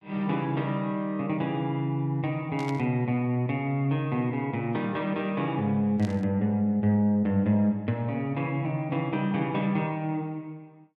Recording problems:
static burst; at 2.5 s and at 6 s; peak -11 dB vs average level

